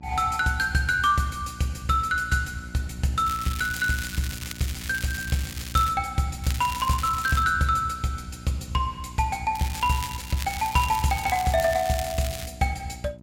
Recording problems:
hum; 60 Hz, harmonics up to 960 Hz, SNR 19 dB
crackling; from 3.5 to 6 s, from 6.5 to 7.5 s and from 9.5 to 12 s; loose cable, SNR 11 dB

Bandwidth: 16.5 kHz